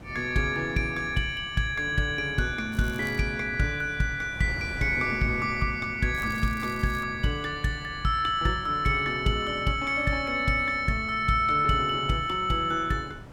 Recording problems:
wind noise; below 410 Hz, SNR 17 dB
crackling; at 2.5 s and at 6 s; loose cable, SNR 23 dB

